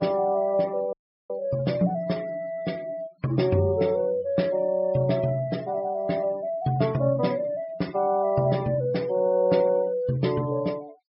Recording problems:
low-pass filter; nothing above 5.4 kHz
denoising artefacts; signal-to-artefact ratio 22 dB
dropout; at 1 s

